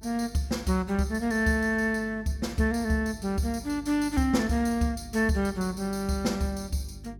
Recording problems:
hum; 50 Hz, harmonics up to 400 Hz, SNR 19 dB

